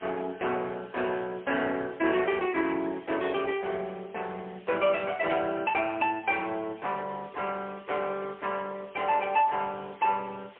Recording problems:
telephone audio; 280 Hz to 3.1 kHz, AMR-NB, then MP3
hiss; SNR 26 dB

